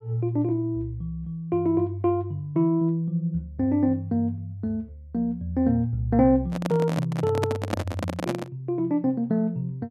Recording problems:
handling noise; from 6.5 to 8.5 s; peak +3 dB vs average level

